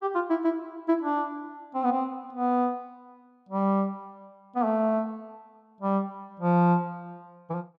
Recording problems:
none

